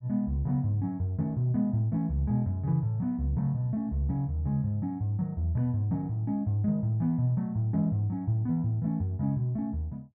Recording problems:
none

